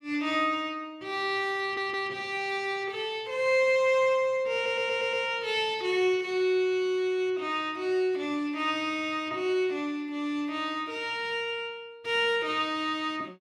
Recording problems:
stutter; at 1.5 s and at 4.5 s

